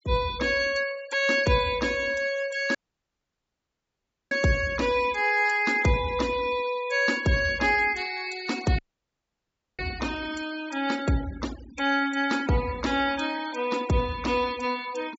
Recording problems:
treble cut off; nothing above 8 kHz
noise reduction artefacts; signal-to-artefact ratio 17 dB
audio cutting out; at 3 s for 1.5 s and at 9 s for 1 s

